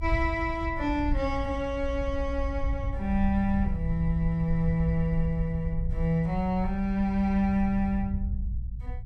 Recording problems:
rumble; below 74 Hz, SNR 5 dB

